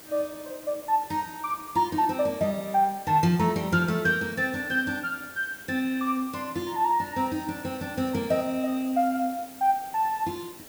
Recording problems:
hiss; SNR 17 dB

